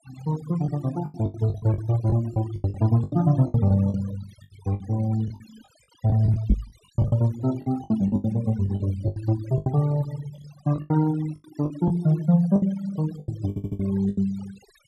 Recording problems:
denoising artefacts; signal-to-artefact ratio 18 dB
lost packets; 15% of the sound replaced, filled with the last packet
knock on the microphone; at 6.5 s; peak +7 dB vs average level
stutter; at 13 s

